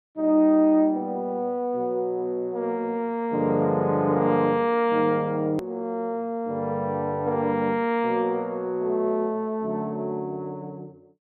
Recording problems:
treble missing; nothing above 4.3 kHz
click at an edit; at 5.5 s

